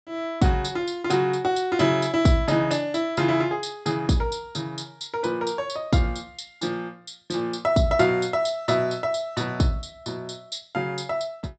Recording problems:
low-pass filter; nothing above 8 kHz

